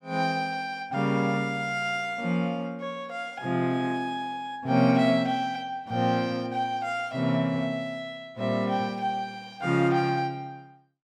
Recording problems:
none

